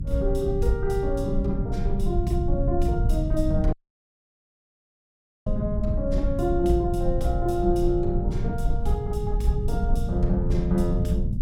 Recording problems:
hum; 50 Hz, harmonics up to 300 Hz, SNR 20 dB
low-frequency rumble; below 110 Hz, SNR 1 dB
dropout; at 3.5 s for 1.5 s

